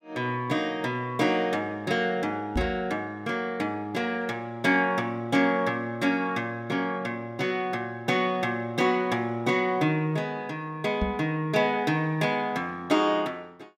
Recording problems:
microphone thump; at 2.5 s and at 11 s; peak +2 dB vs average level

